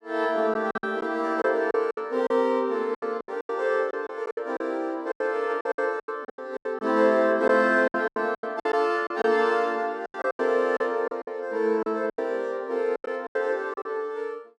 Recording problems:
lost packets; 14% of the sound replaced, filled with silence

